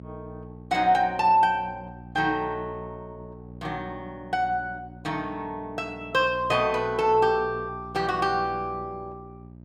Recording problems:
electrical hum; 60 Hz, harmonics up to 660 Hz, SNR 18 dB

